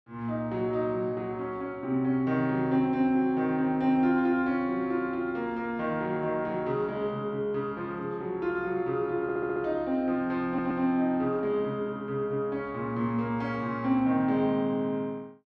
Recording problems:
audio stuttering; at 9 s and at 10 s

